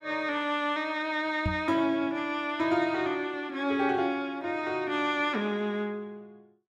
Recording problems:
knock on the microphone; at 1.5 s; peak +2 dB vs average level

